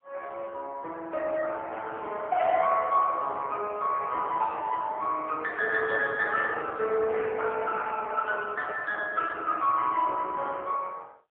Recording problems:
telephone audio; 370 Hz to 3.3 kHz, AMR-NB, then MP3

